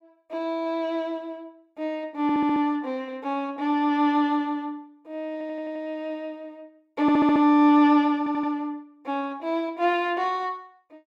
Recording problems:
stutter; 4 times, first at 2 s

